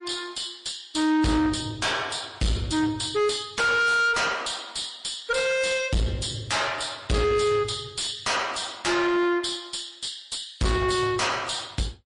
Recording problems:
codec artefacts; MP3, log-spectral distance 5 dB, nothing above 10.1 kHz
distortion; soft clipping, signal-to-distortion ratio 5 dB

